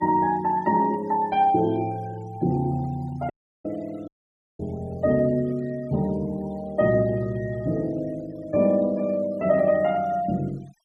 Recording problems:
denoising artefacts; signal-to-artefact ratio 25 dB
audio cutting out; at 3.5 s and at 4 s for 0.5 s

